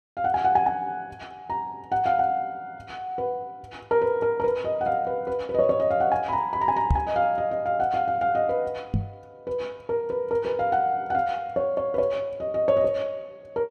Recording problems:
microphone bump; at 7 s and at 9 s; peak +6 dB vs average level

